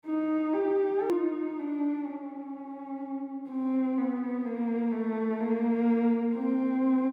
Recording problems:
click at an edit; at 1 s

